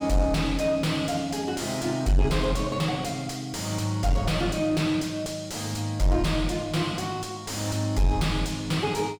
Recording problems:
distortion; soft clipping, signal-to-distortion ratio 6 dB

